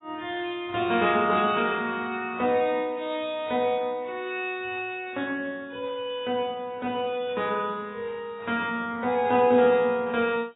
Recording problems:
lossy codec; AAC, log-spectral distance 2 dB, nothing above 3.8 kHz

